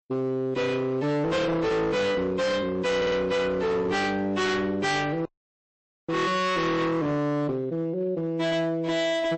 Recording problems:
lossy codec; MP3, log-spectral distance 2 dB, nothing above 8.2 kHz
distorted audio; hard clipping, signal-to-distortion ratio 7 dB
stutter; at 3 s
audio cutting out; at 5.5 s for 1 s

